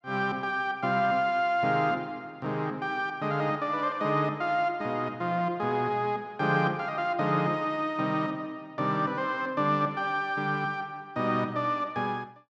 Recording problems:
none

